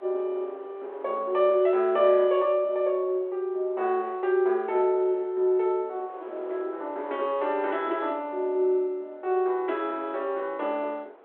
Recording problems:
telephone audio; 320 Hz to 3.6 kHz, G.726
wind noise; below 870 Hz, SNR 22 dB

